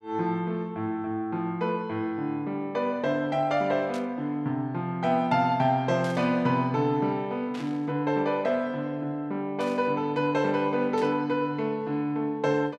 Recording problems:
static burst; 5 times, first at 4 s; peak -11 dB vs average level

